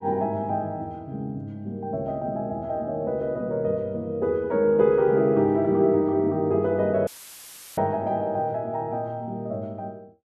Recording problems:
audio cutting out; at 7 s for 0.5 s; filled with static

